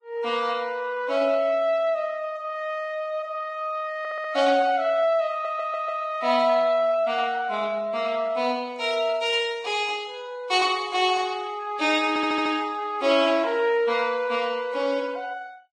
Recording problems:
codec artefacts; Vorbis, log-spectral distance 2 dB
audio stuttering; at 4 s, at 5.5 s and at 12 s

